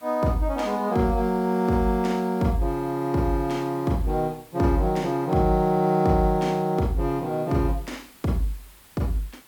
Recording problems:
hiss; slope -2 dB per octave, SNR 26 dB

